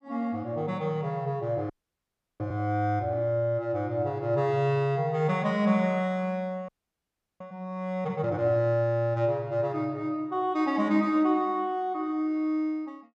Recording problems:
audio freezing; at 1.5 s for 0.5 s and at 6.5 s for 0.5 s

